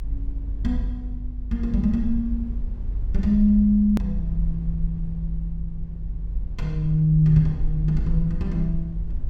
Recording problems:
hum; 50 Hz, harmonics up to 550 Hz, SNR 24 dB
rumble; below 50 Hz, SNR 7 dB
hard cut with a click; at 4 s

